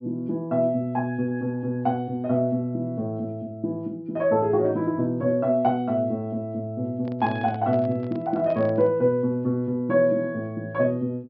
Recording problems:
low-pass filter; nothing above 5.5 kHz
microphone handling noise; from 7 to 9 s; peak -9 dB vs average level

